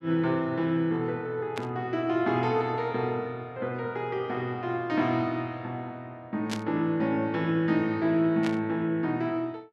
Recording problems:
static burst; at 1.5 s, at 6.5 s and at 8.5 s; peak -2 dB vs average level

